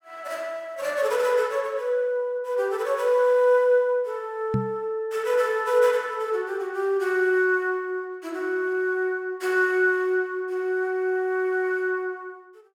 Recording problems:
microphone bump; at 4.5 s; peak +2 dB vs average level

